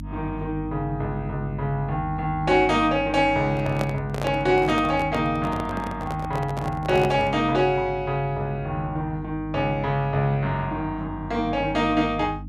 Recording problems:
hum; 50 Hz, harmonics up to 300 Hz, SNR 13 dB
handling noise; from 3.5 to 7.5 s; peak 0 dB vs average level

